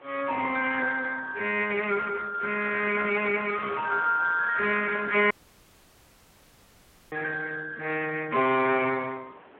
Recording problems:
phone line; 240 Hz to 3.3 kHz, Speex
wind on the microphone; below 1.6 kHz, SNR 22 dB
dropout; at 5.5 s for 2 s

